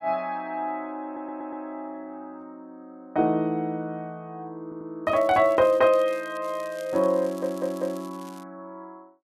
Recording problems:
stutter; at 1 s, at 4.5 s and at 7 s
crackling; from 5 to 8.5 s; loose cable, SNR 24 dB

